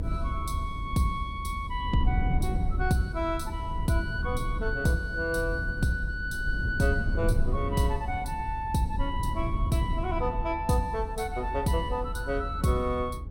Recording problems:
rumble; below 94 Hz, SNR 3 dB

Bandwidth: 16 kHz